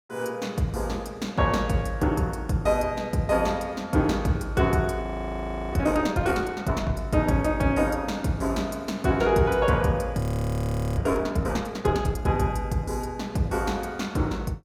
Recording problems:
audio freezing; at 5 s for 0.5 s and at 10 s for 1 s

